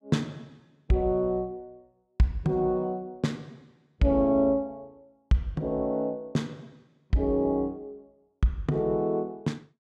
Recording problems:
none

